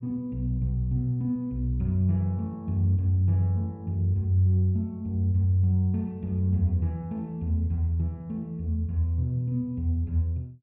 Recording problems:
none

